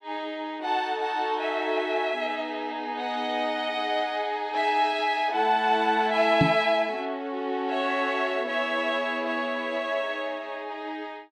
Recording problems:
knock on the microphone; at 6.5 s; peak +8 dB vs average level

